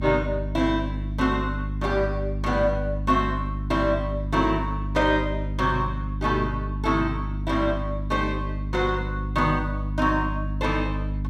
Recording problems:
electrical hum; 50 Hz, harmonics up to 300 Hz, SNR 4 dB

